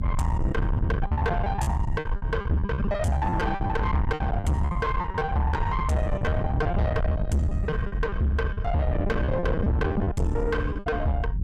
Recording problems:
distorted audio; soft clipping, signal-to-distortion ratio 6 dB
rumble; below 150 Hz, SNR 2 dB
packet loss; 17% of the sound replaced, filled with repeated pitch periods

